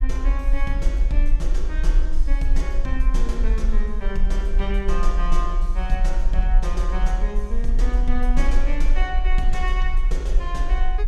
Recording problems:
low-frequency rumble; below 42 Hz, strongest tone 20 Hz, SNR -6 dB

